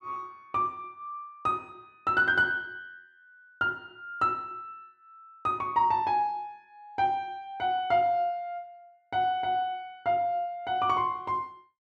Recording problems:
none

